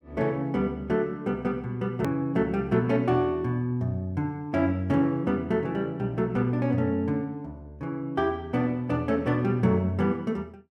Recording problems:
edit click; at 2 s

